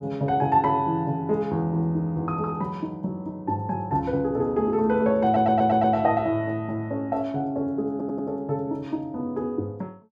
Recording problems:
audio stuttering; at 5 s and at 8 s

